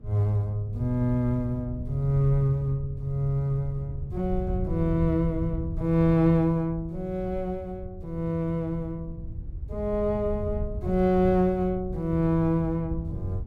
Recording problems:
wind on the microphone; below 100 Hz, SNR 10 dB

